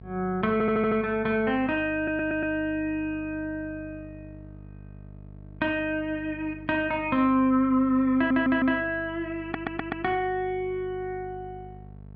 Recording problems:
treble missing; nothing above 5.5 kHz
mains hum; 50 Hz, harmonics up to 700 Hz, SNR 19 dB
stutter; 4 times, first at 0.5 s

